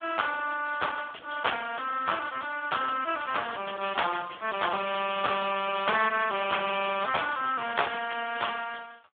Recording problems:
phone line; 220 Hz to 3.5 kHz, Speex

